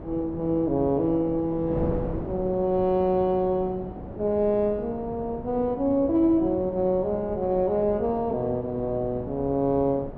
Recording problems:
wind on the microphone; below 460 Hz, SNR 12 dB

